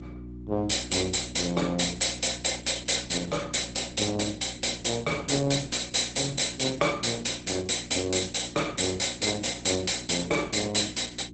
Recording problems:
lossy compression; Opus, log-spectral distance 12 dB, nothing above 8.2 kHz
electrical hum; 60 Hz, harmonics up to 360 Hz, SNR 15 dB

